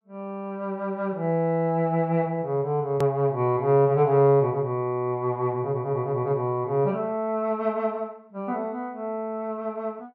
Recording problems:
click at an edit; at 3 s

